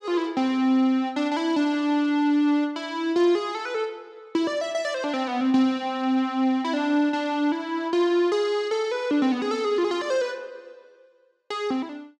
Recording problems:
none

